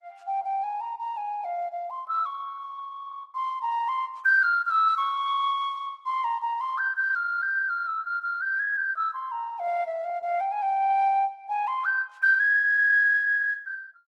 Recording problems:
lossy codec; Opus, log-spectral distance 2 dB

